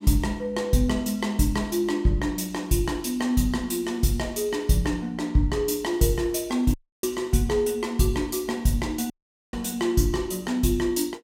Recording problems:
audio cutting out; at 6.5 s and at 9 s

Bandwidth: 16 kHz